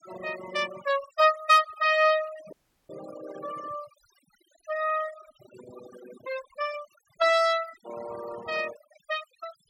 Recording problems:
noise reduction artefacts; signal-to-artefact ratio 16 dB
dropout; at 2.5 s

